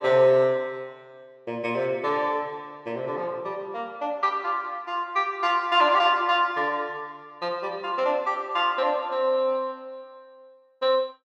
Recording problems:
none

